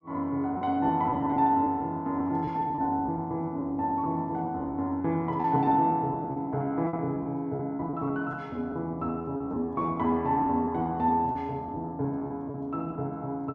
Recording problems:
packet loss; 11% of the sound replaced, filled with repeated pitch periods

